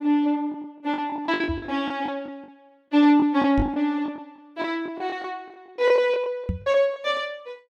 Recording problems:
packet loss; 13% of the sound replaced, filled with the last packet
microphone bump; at 1.5 s, at 3.5 s and at 6.5 s; peak +1 dB vs average level

